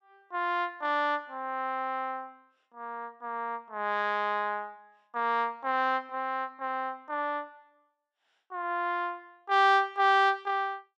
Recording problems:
none

